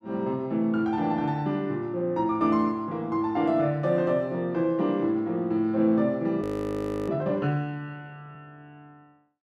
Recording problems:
audio freezing; at 6.5 s for 0.5 s

